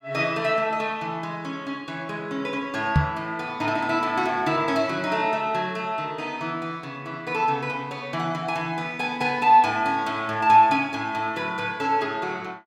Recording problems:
knock on the microphone; at 3 s; peak +8 dB vs average level

